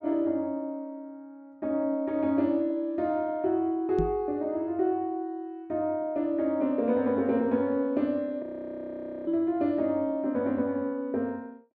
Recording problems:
microphone thump; at 4 s and at 9.5 s; peak 0 dB vs average level
audio freezing; at 8.5 s for 1 s

